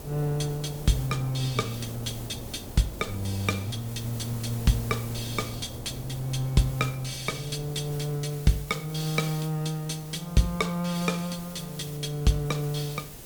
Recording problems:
hiss; slope -1 dB per octave, SNR 15 dB
wind on the microphone; below 470 Hz, SNR 15 dB

